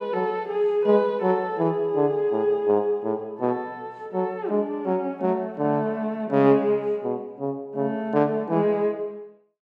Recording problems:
none

